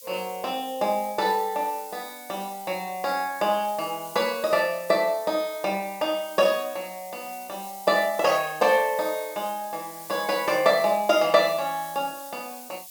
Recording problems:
background hiss; SNR 16 dB

